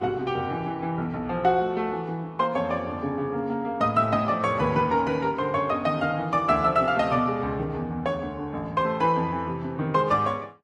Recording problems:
codec artefacts; Vorbis, log-spectral distance 2 dB, nothing above 13.3 kHz

